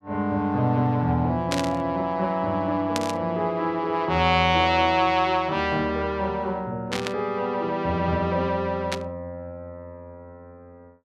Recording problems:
burst of static; 4 times, first at 1.5 s; peak 0 dB vs average level

